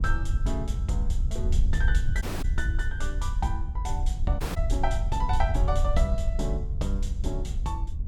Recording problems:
wind noise; below 68 Hz, SNR -5 dB
audio cutting out; at 2 s and at 4.5 s

